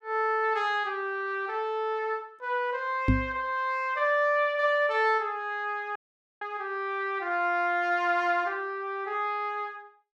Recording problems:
microphone bump; at 3 s; peak +8 dB vs average level
dropout; at 6 s

